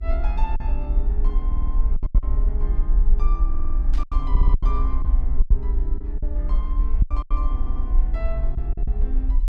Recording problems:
hum; 50 Hz, harmonics up to 400 Hz, SNR 24 dB
rumble; below 48 Hz, SNR -12 dB
packet loss; 9% of the sound replaced, filled with silence
audio stuttering; 4 times, first at 1.5 s
static burst; at 4 s; peak -3 dB vs average level

